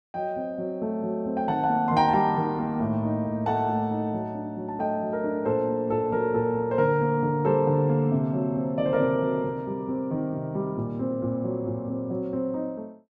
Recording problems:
none

